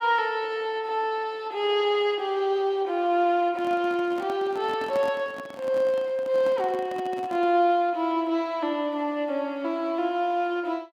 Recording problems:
microphone handling noise; from 3.5 to 7.5 s; peak -7 dB vs average level

